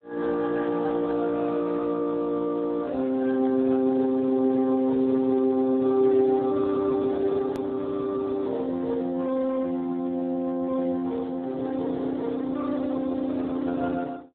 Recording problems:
telephone audio; 190 Hz to 2.1 kHz, Speex
click at an edit; at 7.5 s

